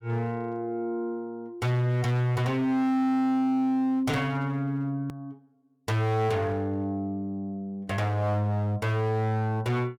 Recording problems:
distortion; hard clipping, signal-to-distortion ratio 8 dB
edit click; at 5 s

